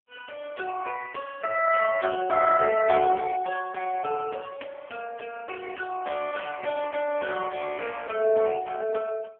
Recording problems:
phone line; 300 Hz to 2.6 kHz, AMR-NB

